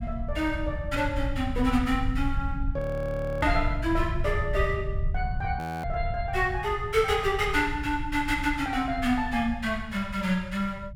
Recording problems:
low-frequency rumble; below 96 Hz, SNR 6 dB
audio freezing; at 3 s for 0.5 s and at 5.5 s

